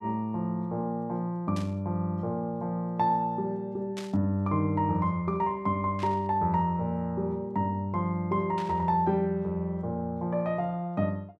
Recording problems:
static burst; 4 times, first at 1.5 s; peak -8 dB vs average level

